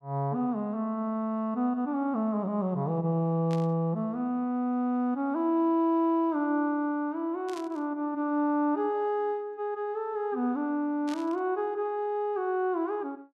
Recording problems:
burst of static; at 3.5 s, at 7.5 s and at 11 s; peak -11 dB vs average level

